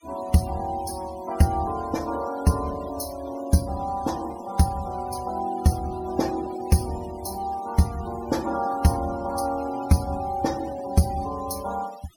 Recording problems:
noise reduction artefacts; signal-to-artefact ratio 18 dB

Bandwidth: 17 kHz